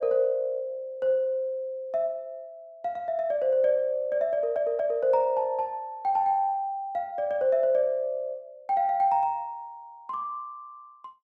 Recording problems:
stutter; at 4.5 s

